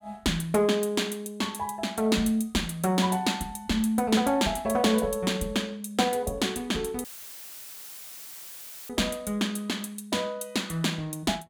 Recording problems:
dropout; at 7 s for 2 s; filled with static

